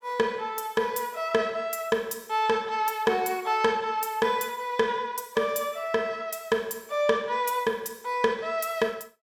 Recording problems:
none

